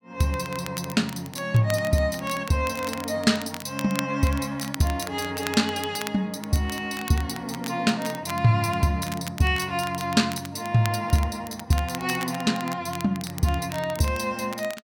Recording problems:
crackling; vinyl, SNR 14 dB

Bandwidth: 17 kHz